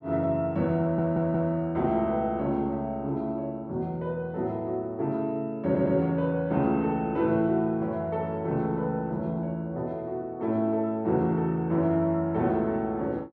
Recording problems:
audio stuttering; at 1 s and at 5.5 s

